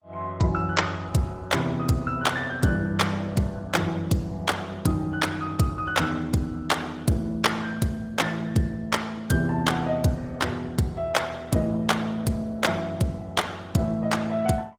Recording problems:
codec artefacts; Opus, then Opus, log-spectral distance 3 dB, nothing above 19.5 kHz

